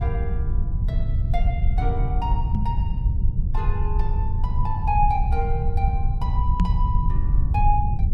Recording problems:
rumble; below 84 Hz, SNR -5 dB
microphone thump; at 2.5 s and at 6.5 s; peak +8 dB vs average level

